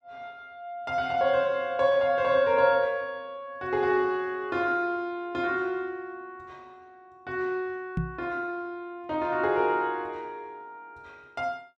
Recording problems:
microphone thump; at 8 s; peak +1 dB vs average level

